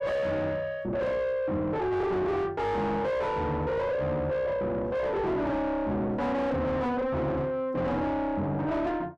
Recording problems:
distortion; soft clipping, signal-to-distortion ratio 6 dB

